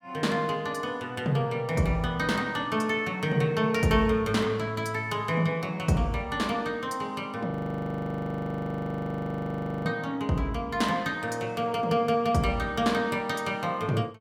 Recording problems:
frozen audio; at 7.5 s for 2.5 s

